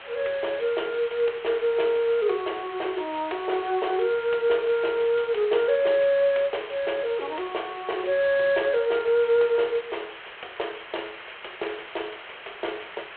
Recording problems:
phone line; 320 Hz to 3.3 kHz, G.726
background hiss; SNR 15 dB

